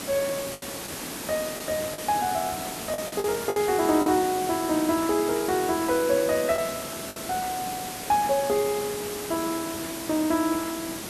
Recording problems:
background hiss; slope -3 dB per octave, SNR 7 dB
packet loss; 4% of the sound replaced, filled with the last packet

